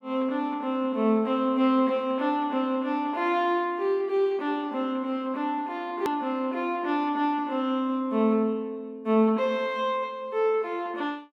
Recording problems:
edit click; at 6 s

